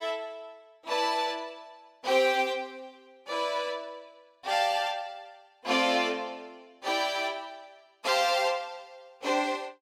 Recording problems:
none

